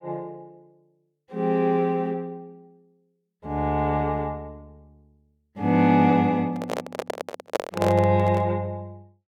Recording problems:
handling noise; from 6.5 to 8.5 s; peak +3 dB vs average level

